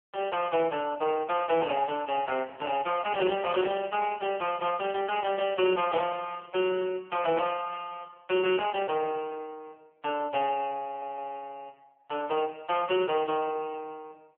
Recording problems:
phone line; 220 Hz to 3.1 kHz, AMR-NB
stutter; at 11 s

